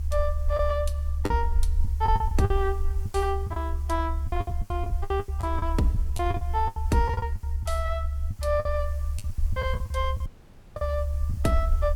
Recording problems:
hiss; SNR 25 dB
low-frequency rumble; below 72 Hz, SNR 0 dB
lost packets; 14% of the sound replaced, filled with the last packet
dropout; at 10 s for 0.5 s

